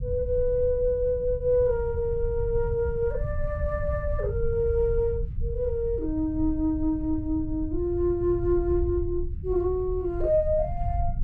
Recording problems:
low-frequency rumble; below 86 Hz, SNR 7 dB

